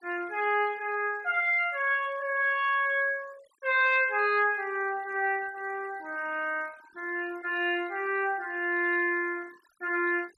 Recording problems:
noise reduction artefacts; signal-to-artefact ratio 25 dB

